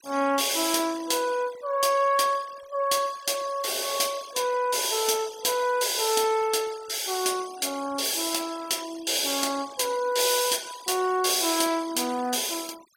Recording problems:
denoising artefacts; signal-to-artefact ratio 18 dB

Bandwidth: 17 kHz